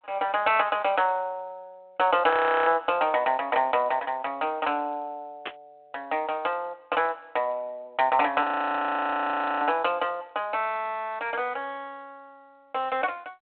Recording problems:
telephone audio; 260 Hz to 3.6 kHz, G.726
audio freezing; at 2.5 s and at 8.5 s for 1 s
static burst; at 5.5 s; peak -3 dB vs average level

